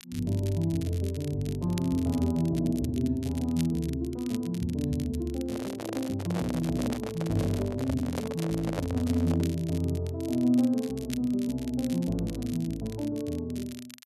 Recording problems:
crackling; vinyl, SNR 17 dB
handling noise; from 5.5 to 9.5 s; peak 0 dB vs average level

